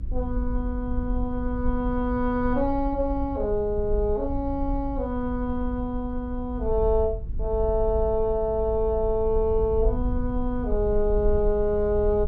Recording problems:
low-frequency rumble; below 56 Hz, SNR 6 dB

